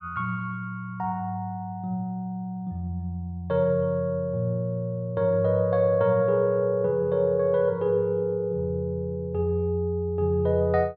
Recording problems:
none

